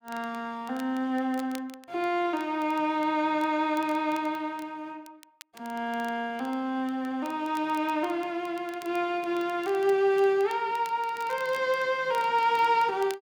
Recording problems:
crackling; vinyl, SNR 24 dB

